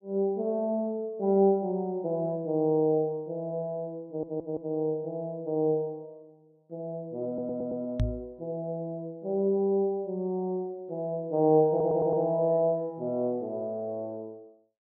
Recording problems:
audio stuttering; at 4 s, at 7.5 s and at 12 s
microphone thump; at 8 s; peak +4 dB vs average level

